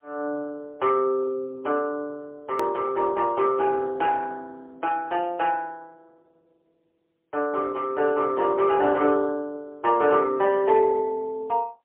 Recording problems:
telephone audio; 300 Hz to 3.7 kHz, AMR-NB, then MP3
edit click; at 2.5 s

